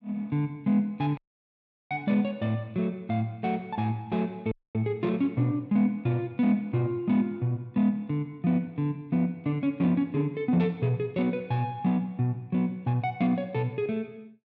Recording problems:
dropout; at 1 s for 0.5 s and at 4.5 s

